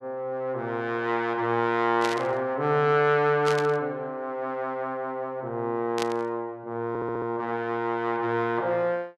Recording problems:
static burst; at 2 s, at 3.5 s and at 6 s; peak -1 dB vs average level
stutter; at 7 s

